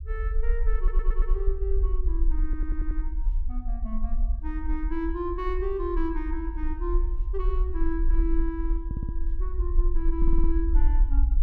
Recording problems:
low-frequency rumble; below 44 Hz, SNR -6 dB
stutter; 4 times, first at 1 s

